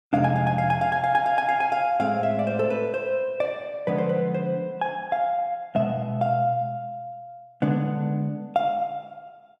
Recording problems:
none

